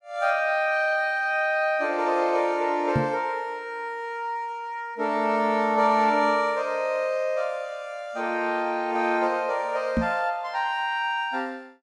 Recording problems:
knock on the microphone; at 3 s and at 10 s; peak +4 dB vs average level

